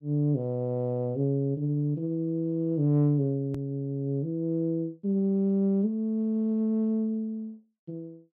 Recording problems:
hard cut with a click; at 3.5 s

